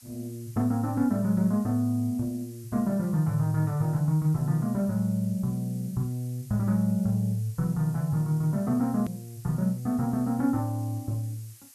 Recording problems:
hiss; slope +3 dB per octave, SNR 23 dB
edit click; at 9 s

